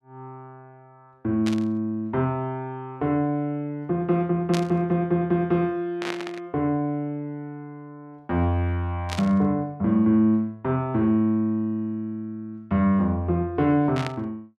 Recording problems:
static burst; 5 times, first at 1.5 s; peak -3 dB vs average level

